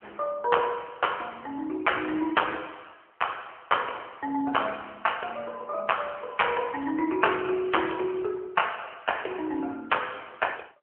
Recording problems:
telephone audio; 280 Hz to 3.2 kHz, AMR-NB

